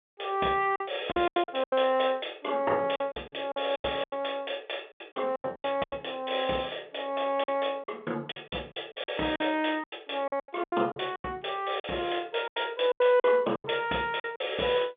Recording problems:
telephone audio; 220 Hz to 3.6 kHz, G.711
packet loss; 14% of the sound replaced, filled with silence

